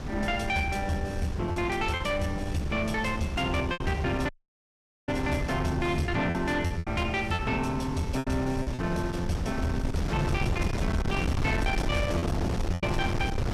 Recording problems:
distorted audio; soft clipping, signal-to-distortion ratio 12 dB
wind on the microphone; below 300 Hz, SNR 4 dB
lost packets; 5% of the sound replaced, filled with repeated pitch periods
audio cutting out; at 4.5 s for 1 s

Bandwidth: 14 kHz